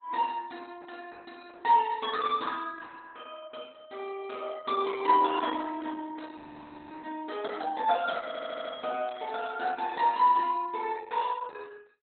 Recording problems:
codec artefacts; Opus, log-spectral distance 4 dB, nothing above 3.8 kHz
audio freezing; at 6.5 s for 0.5 s
stutter; at 8.5 s

